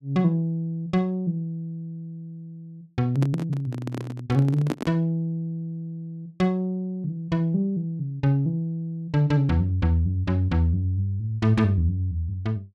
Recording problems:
microphone handling noise; from 3 to 5 s; peak +2 dB vs average level

